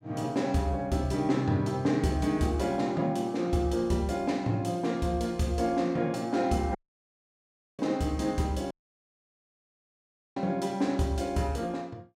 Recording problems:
dropout; at 7 s for 1 s and at 8.5 s for 1.5 s

